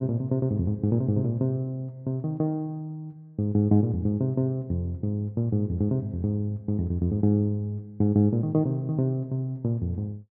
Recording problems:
none

